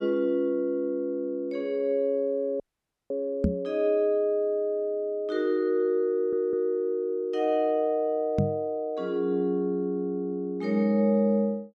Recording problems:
dropout; at 2.5 s for 0.5 s
microphone thump; at 3.5 s and at 8.5 s; peak +5 dB vs average level
stutter; at 6 s

